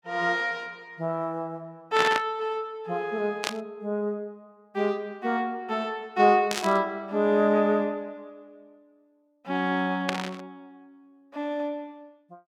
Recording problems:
burst of static; 4 times, first at 2 s; peak +4 dB vs average level

